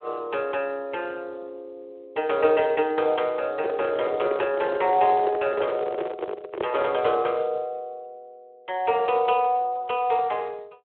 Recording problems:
phone line; 320 Hz to 3.3 kHz, Speex
handling noise; from 3.5 to 7 s; peak 0 dB vs average level

